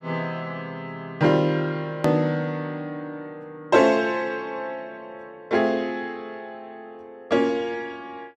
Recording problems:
hard cut with a click; at 2 s

